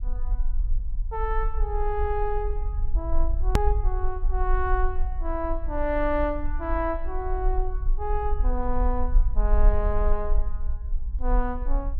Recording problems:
low-frequency rumble; below 44 Hz, SNR -1 dB
click at an edit; at 3.5 s

